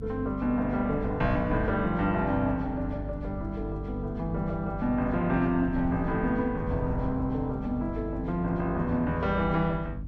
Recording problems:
hum; 50 Hz, harmonics up to 300 Hz, SNR 10 dB
wind on the microphone; below 120 Hz, SNR 14 dB

